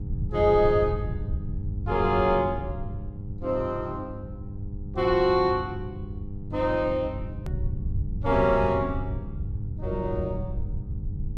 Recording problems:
hum; 50 Hz, harmonics up to 500 Hz, SNR 15 dB
rumble; below 120 Hz, SNR 8 dB
hard cut with a click; at 7.5 s

